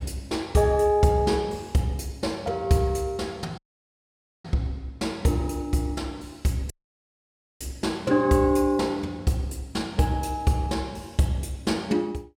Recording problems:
audio cutting out; at 3.5 s for 1 s and at 6.5 s for 1 s

